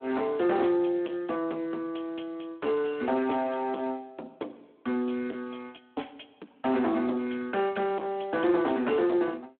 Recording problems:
telephone audio; 220 Hz to 3.6 kHz, Speex
distorted audio; soft clipping, signal-to-distortion ratio 12 dB

